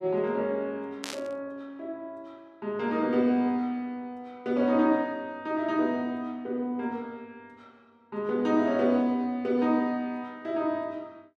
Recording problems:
static burst; at 1 s; peak -3 dB vs average level

